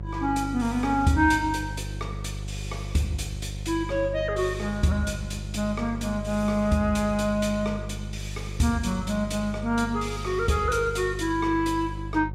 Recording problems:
hum; 50 Hz, harmonics up to 550 Hz, SNR 9 dB

